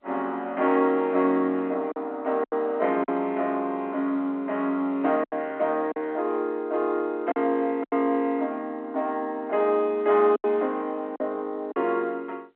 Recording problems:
phone line; 240 Hz to 3.4 kHz, G.711
packet loss; 5% of the sound replaced, filled with silence

